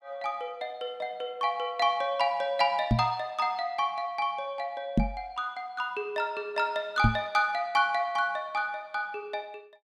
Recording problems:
knock on the microphone; at 3 s, at 5 s and at 7 s; peak +9 dB vs average level

